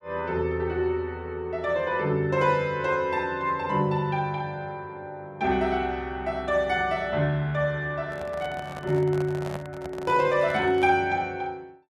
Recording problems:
handling noise; from 8 to 11 s; peak -4 dB vs average level

